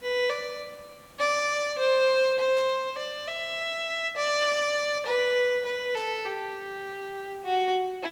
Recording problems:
background hiss; slope -4 dB per octave, SNR 27 dB
burst of static; at 2.5 s, at 4.5 s and at 6 s; peak -13 dB vs average level

